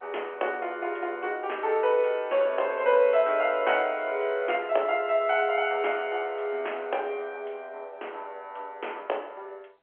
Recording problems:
telephone audio; 340 Hz to 3.3 kHz, G.711

